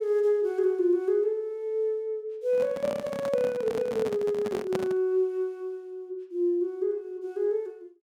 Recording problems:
microphone handling noise; from 2.5 to 5 s; peak 0 dB vs average level

